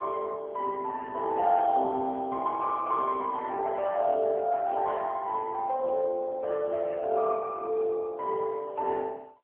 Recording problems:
telephone audio; 340 Hz to 2.7 kHz, AMR-NB

